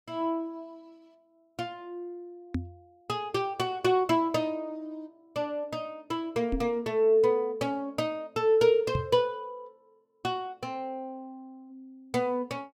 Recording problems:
microphone thump; at 2.5 s, at 6.5 s and at 9 s; peak +2 dB vs average level

